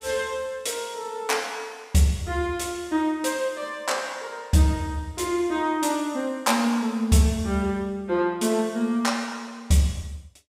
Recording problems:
none

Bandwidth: 15.5 kHz